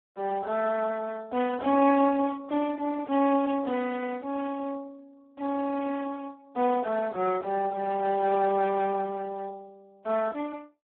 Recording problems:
phone line; 220 Hz to 2.3 kHz, Speex

